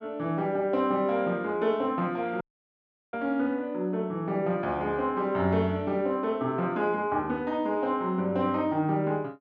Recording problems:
audio cutting out; at 2.5 s for 0.5 s

